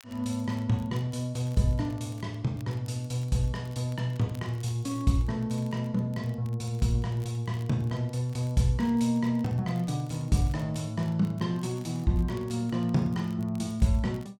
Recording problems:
crackling; vinyl, SNR 29 dB

